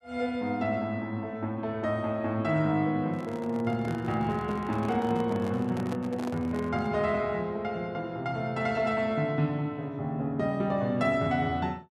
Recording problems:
microphone handling noise; from 3 to 7 s; peak -5 dB vs average level

